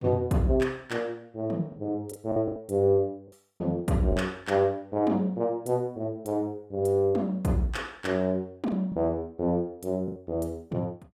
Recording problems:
packet loss; 4% of the sound replaced, filled with the last packet

